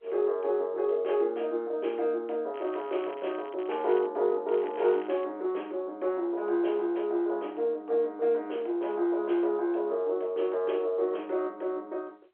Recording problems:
telephone audio; 300 Hz to 3.3 kHz, G.711
crackle; from 2.5 to 4 s and at 4.5 s; loose cable, SNR 23 dB

